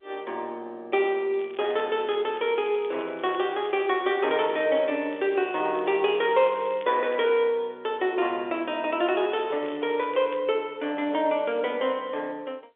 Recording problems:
telephone audio; 300 Hz to 3.6 kHz, G.711
crackle; from 1.5 to 4 s, from 4.5 to 7.5 s and from 9 to 10 s; loose cable, SNR 24 dB

